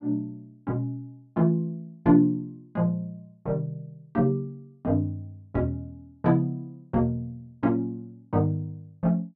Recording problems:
none

